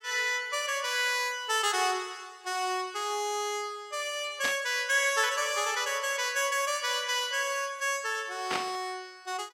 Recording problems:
burst of static; at 4.5 s and at 8.5 s; peak +1 dB vs average level

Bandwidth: 16 kHz